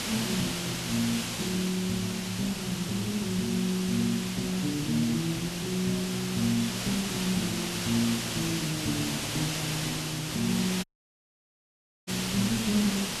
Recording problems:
hiss; slope -1 dB per octave, SNR 2 dB
audio cutting out; at 11 s for 1 s

